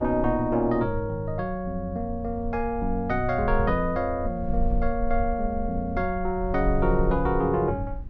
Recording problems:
rumble; below 52 Hz, strongest tone 20 Hz, SNR 8 dB

